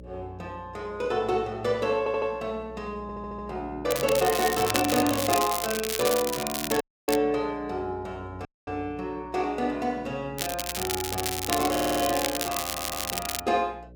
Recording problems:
electrical hum; 60 Hz, harmonics up to 600 Hz, SNR 20 dB
stutter; 4 times, first at 2 s
crackling; from 4 to 7 s and from 10 to 13 s; loose cable, SNR 2 dB
dropout; at 7 s and at 8.5 s

